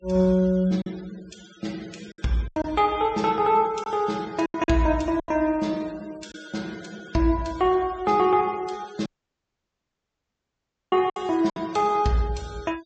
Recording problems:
treble cut off; nothing above 8 kHz
denoising artefacts; signal-to-artefact ratio 23 dB
packet loss; 5% of the sound replaced, filled with silence
dropout; at 9 s for 2 s

